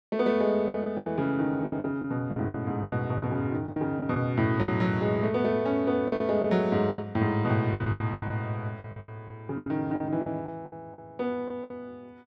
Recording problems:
lost packets; 14% of the sound replaced, filled with the last packet

